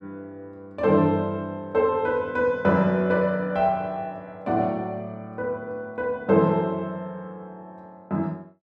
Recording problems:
none

